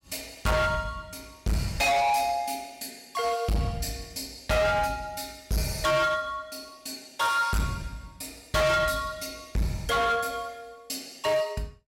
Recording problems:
distortion; hard clipping, signal-to-distortion ratio 6 dB

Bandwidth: 16 kHz